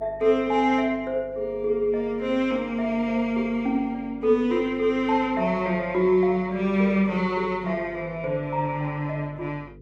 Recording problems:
electrical hum; 50 Hz, harmonics up to 500 Hz, SNR 23 dB

